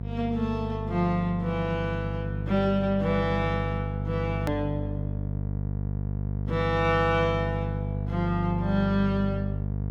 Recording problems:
electrical hum; 50 Hz, harmonics up to 700 Hz, SNR 3 dB
edit click; at 4.5 s

